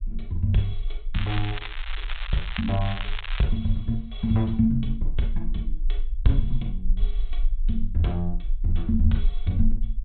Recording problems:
treble missing; nothing above 4 kHz
rumble; below 36 Hz, strongest tone 20 Hz, SNR 5 dB
crackle; from 1 to 3.5 s; loose cable, SNR 9 dB

